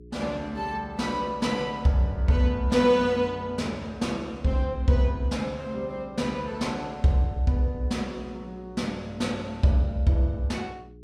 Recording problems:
hum; 60 Hz, harmonics up to 420 Hz, SNR 21 dB

